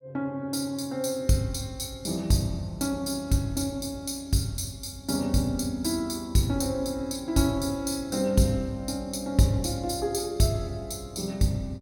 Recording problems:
none

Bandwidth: 17 kHz